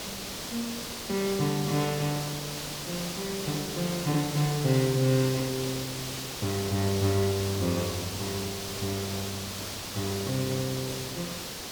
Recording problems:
background hiss; SNR 4 dB

